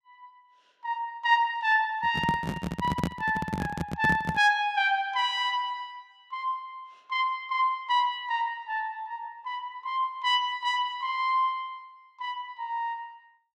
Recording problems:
microphone handling noise; from 2 to 4.5 s; peak +3 dB vs average level

